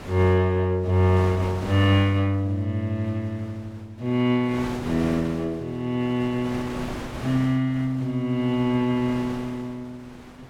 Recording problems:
wind noise; below 1.4 kHz, SNR 14 dB

